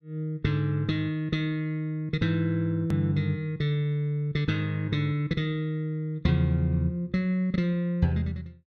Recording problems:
edit click; at 3 s

